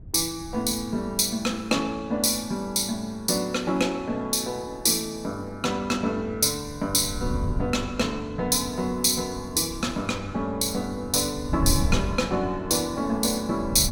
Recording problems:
wind noise; below 120 Hz, SNR 11 dB

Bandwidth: 17 kHz